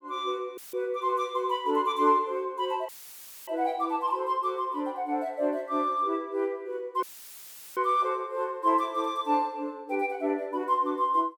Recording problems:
dropout; at 0.5 s, at 3 s for 0.5 s and at 7 s for 0.5 s; filled with static

